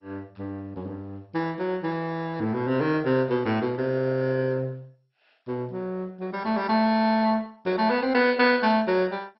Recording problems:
lossy codec; MP2, log-spectral distance 3 dB, nothing above 4.5 kHz

